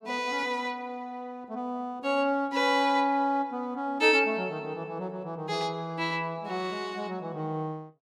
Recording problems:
none

